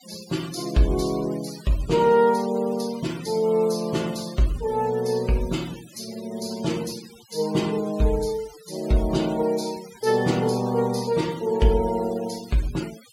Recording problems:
denoising artefacts; signal-to-artefact ratio 18 dB

